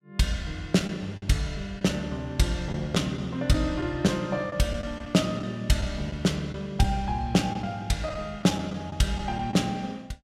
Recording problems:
lost packets; 5% of the sound replaced, filled with the last packet

